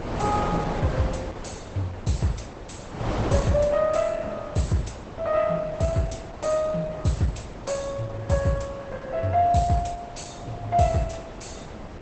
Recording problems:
lossy codec; Opus, log-spectral distance 4 dB, nothing above 8.2 kHz
wind noise; below 800 Hz, SNR 10 dB

